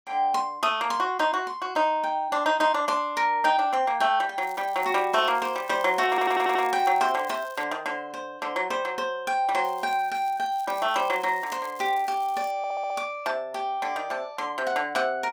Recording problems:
crackling; from 4.5 to 7.5 s and from 9.5 to 13 s; loose cable, SNR 24 dB
audio stuttering; at 6 s and at 13 s

